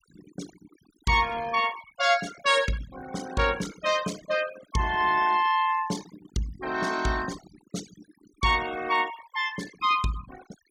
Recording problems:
denoising artefacts; signal-to-artefact ratio 16 dB

